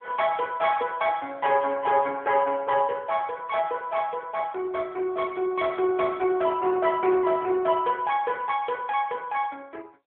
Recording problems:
phone line; 300 Hz to 3.9 kHz, AMR-NB

